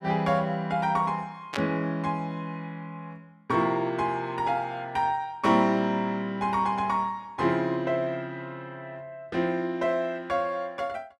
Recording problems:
burst of static; at 1.5 s; peak -1 dB vs average level

